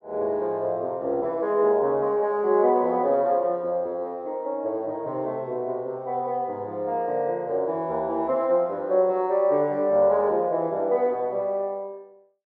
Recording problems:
none

